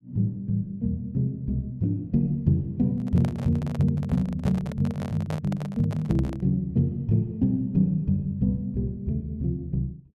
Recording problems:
handling noise; from 3 to 6.5 s; peak -5 dB vs average level

